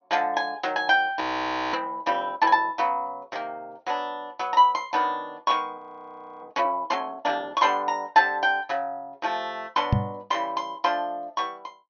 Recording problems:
low-pass filter; nothing above 6.5 kHz
frozen audio; at 1 s for 0.5 s and at 6 s for 0.5 s
knock on the microphone; at 10 s; peak +7 dB vs average level

